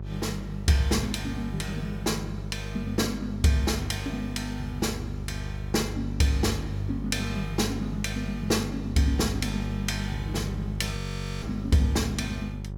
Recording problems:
hum; 50 Hz, harmonics up to 600 Hz, SNR 6 dB
frozen audio; at 11 s

